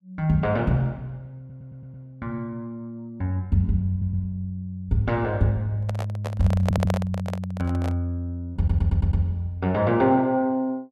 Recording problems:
audio stuttering; 4 times, first at 1.5 s
microphone handling noise; from 6 to 8 s; peak 0 dB vs average level

